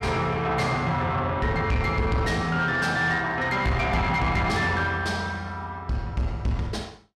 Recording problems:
distorted audio; soft clipping, signal-to-distortion ratio 11 dB

